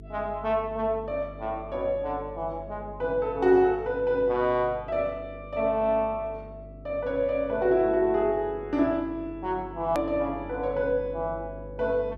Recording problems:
mains hum; 50 Hz, harmonics up to 450 Hz, SNR 18 dB
edit click; at 10 s

